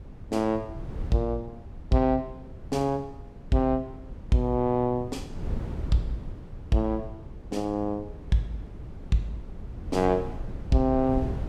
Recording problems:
wind on the microphone; below 150 Hz, SNR 12 dB

